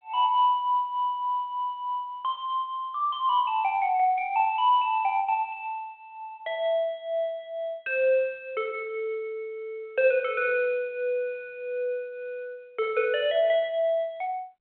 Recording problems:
phone line; 320 Hz to 3.4 kHz, G.726

